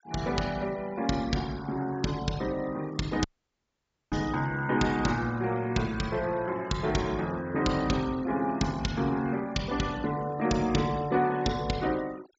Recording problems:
treble cut off; nothing above 8 kHz
noise reduction artefacts; signal-to-artefact ratio 20 dB
audio cutting out; at 3 s for 1 s

